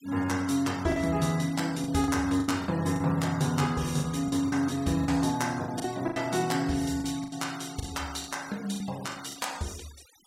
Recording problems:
noise reduction artefacts; signal-to-artefact ratio 18 dB
packet loss; 9% of the sound replaced, filled with the last packet

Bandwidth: 16 kHz